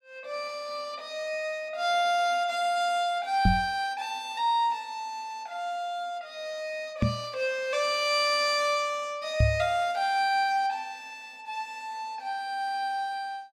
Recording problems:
microphone bump; at 3.5 s, at 7 s and at 9.5 s; peak +8 dB vs average level

